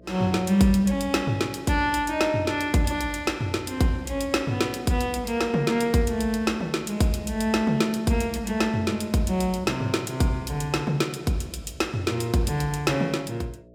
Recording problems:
electrical hum; 60 Hz, harmonics up to 660 Hz, SNR 26 dB

